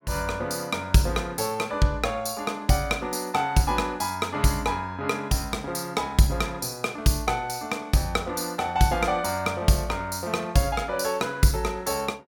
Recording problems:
none

